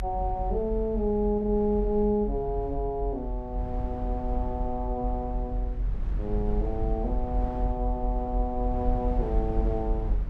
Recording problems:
low-frequency rumble; below 56 Hz, strongest tone 42 Hz, SNR 2 dB

